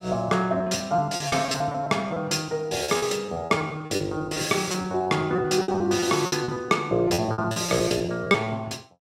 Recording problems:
lost packets; 16% of the sound replaced, filled with repeated pitch periods

